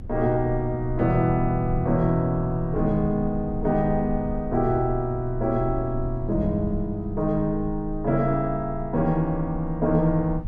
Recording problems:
rumble; below 66 Hz, strongest tone 26 Hz, SNR 12 dB

